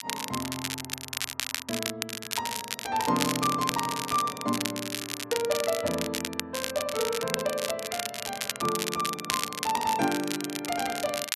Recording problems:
crackle; vinyl, SNR 2 dB

